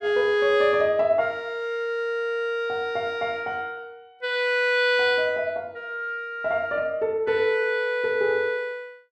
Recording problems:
none

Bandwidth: 13 kHz